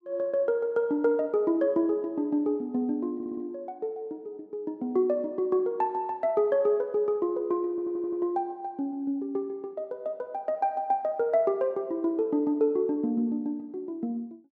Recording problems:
audio stuttering; at 3 s and at 7.5 s

